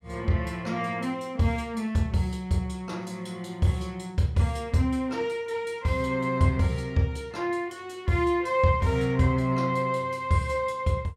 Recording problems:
none

